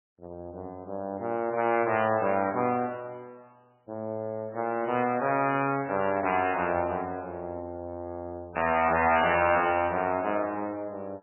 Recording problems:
lossy compression; MP3, log-spectral distance 3 dB, nothing above 2.9 kHz
distortion; hard clipping, uneven, signal-to-distortion ratio 11 dB

